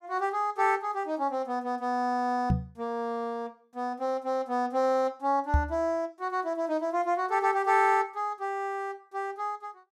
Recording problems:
microphone thump; at 2.5 s and at 5.5 s; peak +7 dB vs average level

